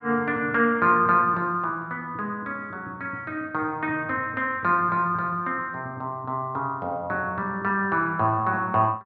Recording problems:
none

